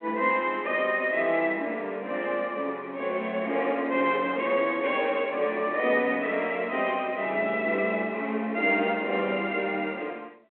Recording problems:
phone line; 240 Hz to 3.3 kHz, G.726

